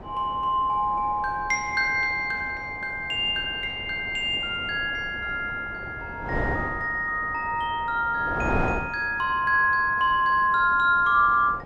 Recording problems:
wind on the microphone; below 760 Hz, SNR 13 dB

